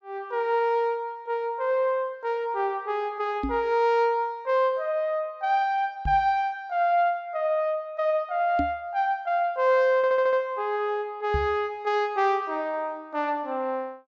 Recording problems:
treble missing; nothing above 7.6 kHz
microphone thump; 4 times, first at 3.5 s; peak 0 dB vs average level
audio stuttering; at 10 s

